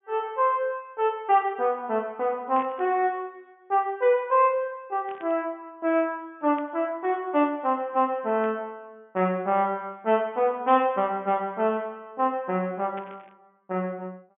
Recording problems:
treble cut off; nothing above 3.3 kHz
burst of static; 5 times, first at 2.5 s; peak -13 dB vs average level

